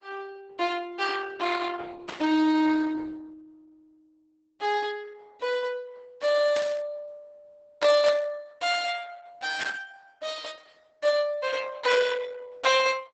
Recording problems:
codec artefacts; Opus, log-spectral distance 4 dB, nothing above 8 kHz
static burst; 5 times, first at 2 s; peak -7 dB vs average level

